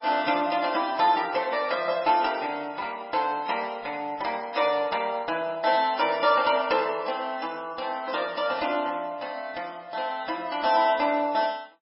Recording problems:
codec artefacts; MP3, log-spectral distance 4 dB, nothing above 5.3 kHz

